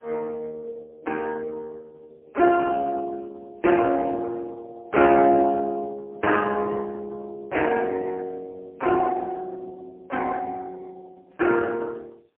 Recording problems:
phone line; 300 Hz to 2.1 kHz, AMR-NB, then MP3

